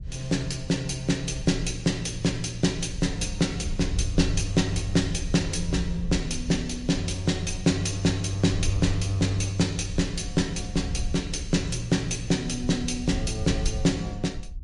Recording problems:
lossy compression; MP3, log-spectral distance 3 dB, nothing above 11 kHz
wind on the microphone; below 78 Hz, SNR 9 dB

